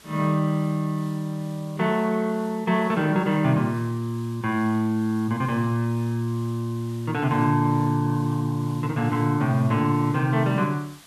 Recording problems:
hiss; slope 0 dB per octave, SNR 24 dB

